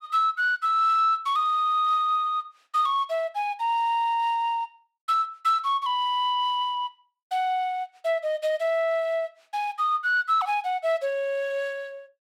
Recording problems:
none

